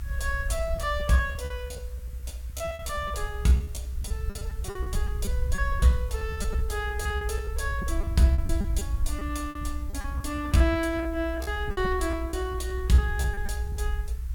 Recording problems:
hiss; SNR 25 dB
low-frequency rumble; below 68 Hz, SNR 4 dB
lost packets; 15% of the sound replaced, filled with repeated pitch periods

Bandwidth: 17 kHz